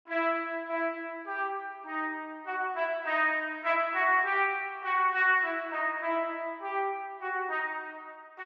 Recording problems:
none

